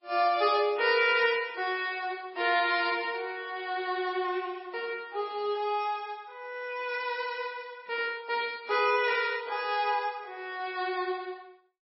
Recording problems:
lossy codec; MP3, log-spectral distance 3 dB, nothing above 5.3 kHz

